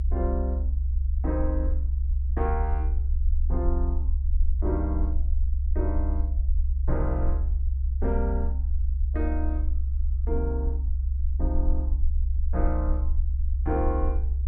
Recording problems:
rumble; below 68 Hz, SNR -6 dB

